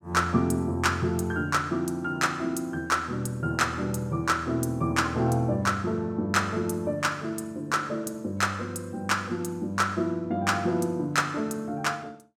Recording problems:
none

